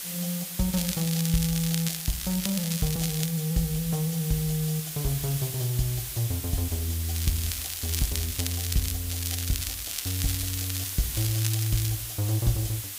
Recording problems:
background hiss; SNR 4 dB
crackle; 4 times, first at 0.5 s; loose cable, SNR 4 dB

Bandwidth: 15.5 kHz